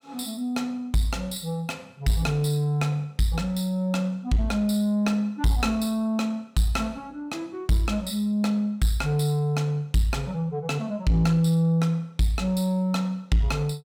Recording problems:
distorted audio; soft clipping, signal-to-distortion ratio 10 dB

